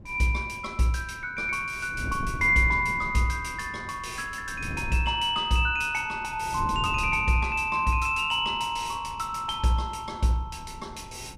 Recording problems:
wind on the microphone; below 200 Hz, SNR 15 dB

